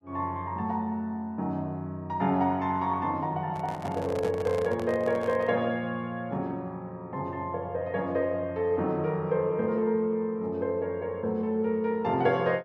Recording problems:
handling noise; from 3.5 to 5.5 s; peak -5 dB vs average level

